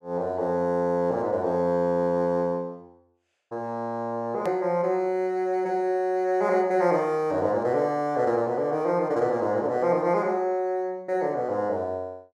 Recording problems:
hard cut with a click; at 4.5 s

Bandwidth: 12.5 kHz